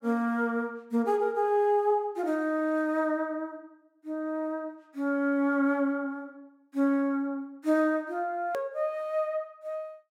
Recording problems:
hard cut with a click; at 8.5 s

